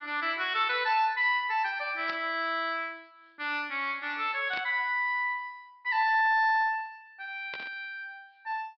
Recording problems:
treble cut off; nothing above 5.5 kHz
burst of static; at 2 s, at 4.5 s and at 7.5 s; peak -7 dB vs average level

